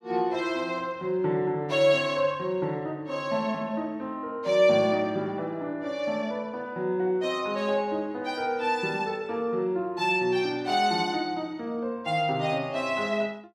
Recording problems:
none

